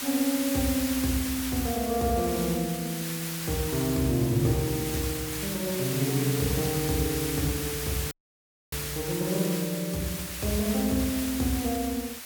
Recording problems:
hiss; slope +1 dB per octave, SNR 4 dB
audio cutting out; at 8 s for 0.5 s

